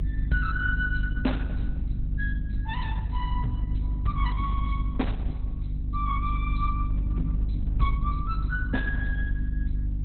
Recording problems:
lossy codec; Opus, log-spectral distance 2 dB, nothing above 4 kHz
hum; 50 Hz, harmonics up to 300 Hz, SNR -1 dB
low-frequency rumble; below 74 Hz, strongest tone 26 Hz, SNR 3 dB

